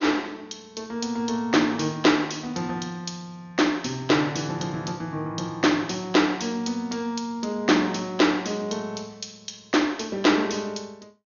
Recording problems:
treble cut off; nothing above 6.7 kHz

